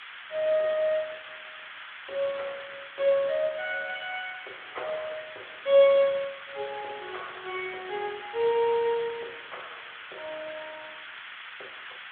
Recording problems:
phone line; 320 Hz to 3.7 kHz, Speex
hiss; SNR 13 dB

